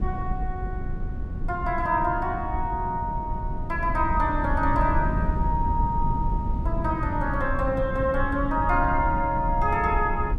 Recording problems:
wind noise; below 110 Hz, SNR 4 dB

